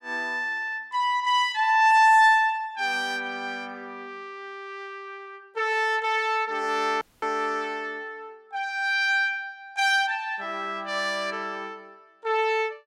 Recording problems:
audio cutting out; at 7 s

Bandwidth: 16 kHz